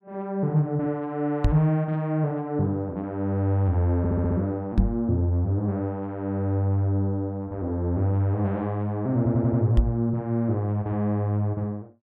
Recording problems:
microphone bump; at 1.5 s, at 5 s and at 10 s; peak +8 dB vs average level
audio stuttering; at 4 s and at 9 s

